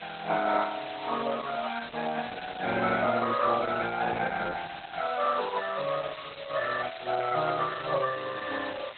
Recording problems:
lossy codec; Opus, log-spectral distance 20 dB, nothing above 3.9 kHz
hiss; SNR 14 dB

